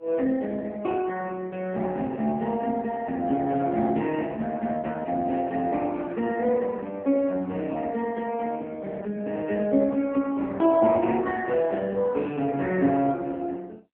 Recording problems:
phone line; 190 Hz to 2.6 kHz, AMR-NB

